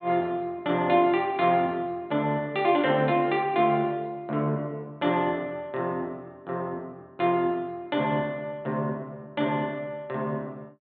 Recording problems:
treble missing; nothing above 4 kHz

